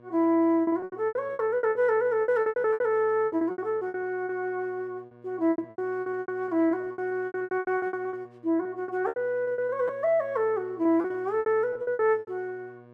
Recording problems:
hum; 60 Hz, harmonics up to 1.7 kHz, SNR 26 dB
lost packets; 22% of the sound replaced, filled with repeated pitch periods

